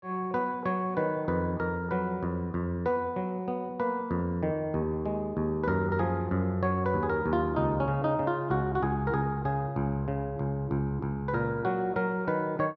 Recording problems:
none

